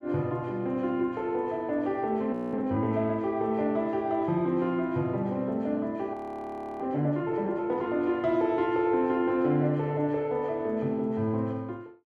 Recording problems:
audio freezing; at 2.5 s and at 6 s for 0.5 s

